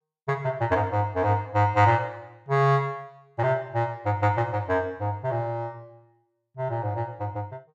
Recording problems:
none

